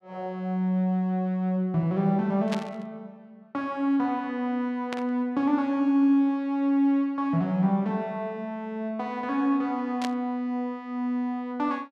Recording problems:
static burst; at 2.5 s, at 5 s and at 10 s; peak -4 dB vs average level

